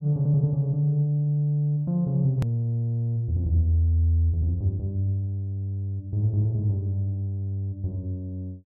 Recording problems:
edit click; at 2.5 s

